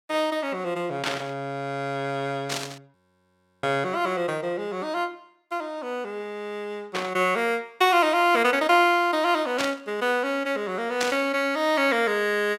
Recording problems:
burst of static; 5 times, first at 1 s; peak +1 dB vs average level
audio freezing; at 3 s for 0.5 s

